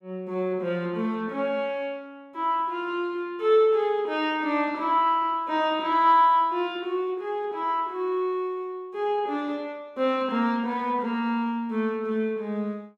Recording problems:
none

